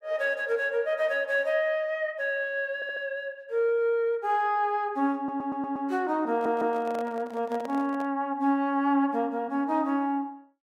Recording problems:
audio stuttering; at 3 s, at 5 s and at 6.5 s
microphone handling noise; from 6.5 to 8 s; peak -8 dB vs average level

